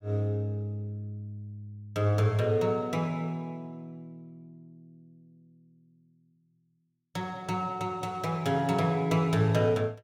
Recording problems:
none

